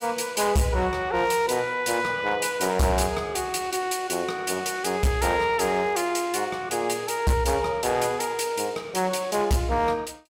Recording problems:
distorted audio; hard clipping, signal-to-distortion ratio 11 dB

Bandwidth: 16.5 kHz